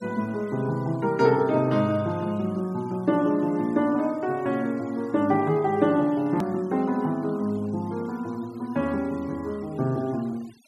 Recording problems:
denoising artefacts; signal-to-artefact ratio 26 dB
hard cut with a click; at 6.5 s

